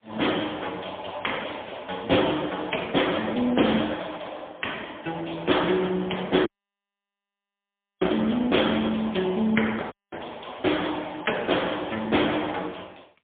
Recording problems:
phone line; 220 Hz to 3.6 kHz, AMR-NB, then MP3
dropout; at 6.5 s for 1.5 s and at 10 s

